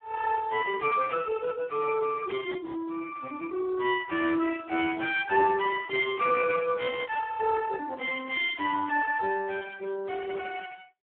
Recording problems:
phone line; 280 Hz to 2.3 kHz, Speex

